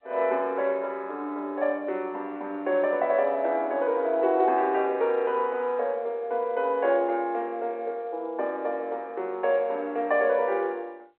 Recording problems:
phone line; 320 Hz to 3.4 kHz, G.711

